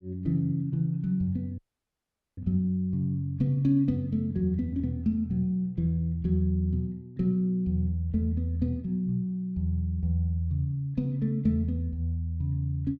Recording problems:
audio cutting out; at 1.5 s for 1 s

